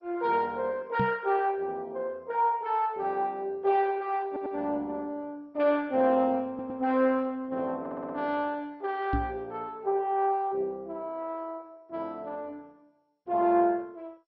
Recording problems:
lossy compression; MP2, log-spectral distance 2 dB, nothing above 4.8 kHz
microphone bump; at 1 s and at 9 s; peak +3 dB vs average level
audio stuttering; at 4.5 s, at 6.5 s and at 8 s

